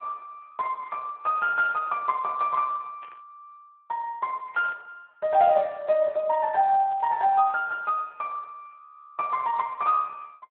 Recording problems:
telephone audio; 370 Hz to 2.8 kHz, Speex
burst of static; 4 times, first at 1.5 s; peak -17 dB vs average level

